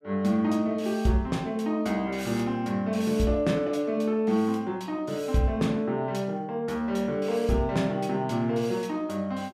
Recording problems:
none

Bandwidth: 14.5 kHz